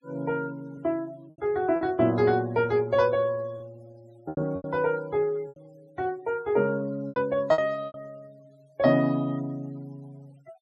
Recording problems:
noise reduction artefacts; signal-to-artefact ratio 28 dB
lost packets; 7% of the sound replaced, filled with repeated pitch periods

